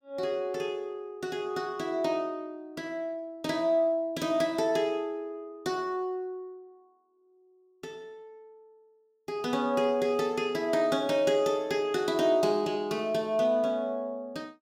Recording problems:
none

